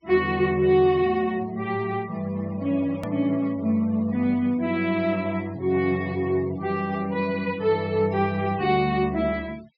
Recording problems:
treble cut off; nothing above 5.5 kHz
noise reduction artefacts; signal-to-artefact ratio 24 dB
click at an edit; at 3 s

